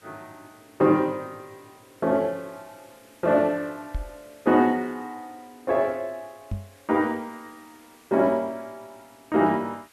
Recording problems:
hiss; SNR 30 dB
knock on the microphone; at 4 s and at 6.5 s; peak -3 dB vs average level

